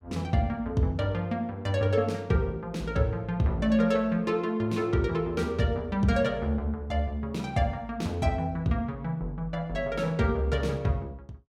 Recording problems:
none

